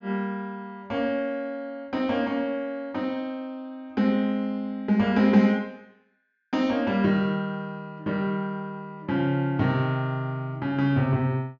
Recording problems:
treble cut off; nothing above 7.4 kHz

